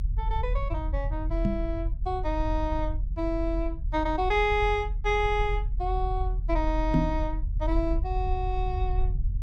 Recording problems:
low-frequency rumble; below 58 Hz, strongest tone 42 Hz, SNR 2 dB
microphone bump; at 1.5 s and at 7 s; peak +9 dB vs average level

